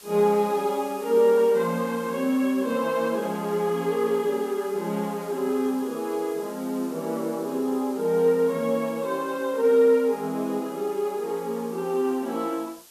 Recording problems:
hiss; SNR 22 dB

